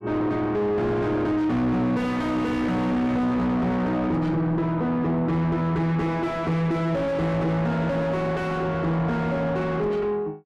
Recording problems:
distortion; soft clipping, signal-to-distortion ratio 6 dB

